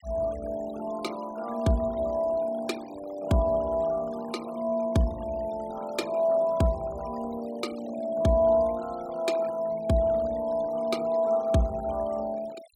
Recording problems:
denoising artefacts; signal-to-artefact ratio 21 dB

